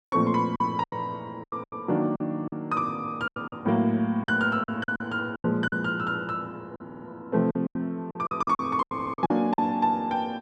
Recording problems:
lost packets; 13% of the sound replaced, filled with silence
stutter; at 7 s and at 9 s

